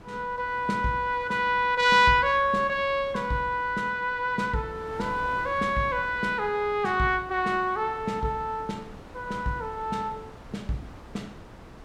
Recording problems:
wind noise; below 950 Hz, SNR 20 dB

